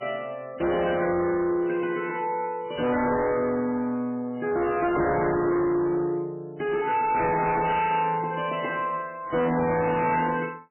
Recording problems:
codec artefacts; MP3, log-spectral distance 3 dB, nothing above 2.7 kHz
distortion; hard clipping, signal-to-distortion ratio 8 dB

